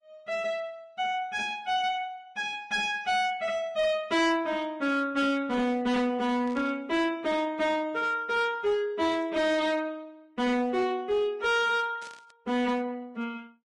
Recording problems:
lossy compression; Vorbis, log-spectral distance 2 dB, nothing above 10.7 kHz
distortion; hard clipping, uneven, signal-to-distortion ratio 11 dB
static burst; at 6.5 s, at 9 s and at 12 s; peak -14 dB vs average level

